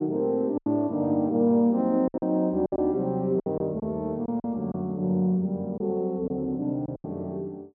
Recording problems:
lost packets; 8% of the sound replaced, filled with silence

